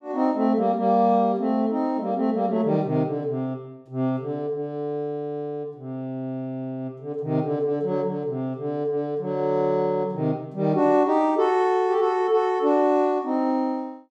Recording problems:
none

